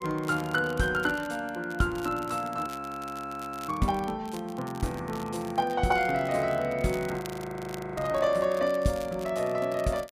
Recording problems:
crackling; vinyl, SNR 19 dB
frozen audio; at 2.5 s for 1 s and at 7 s for 1 s

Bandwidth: 15 kHz